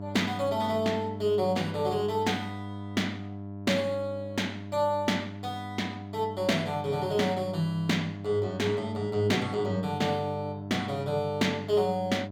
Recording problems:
hum; 50 Hz, harmonics up to 1 kHz, SNR 10 dB

